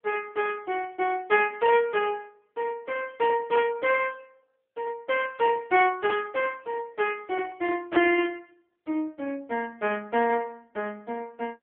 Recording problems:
telephone audio; 260 Hz to 3.3 kHz, AMR-NB

